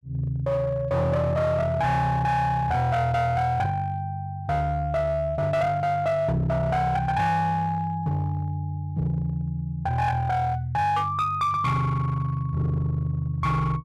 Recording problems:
distortion; hard clipping, uneven, signal-to-distortion ratio 11 dB

